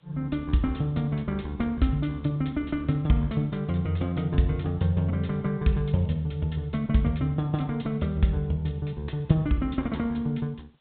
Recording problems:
low-pass filter; nothing above 4 kHz
background hiss; SNR 42 dB

